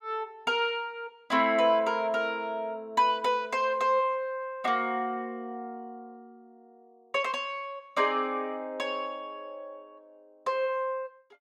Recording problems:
none

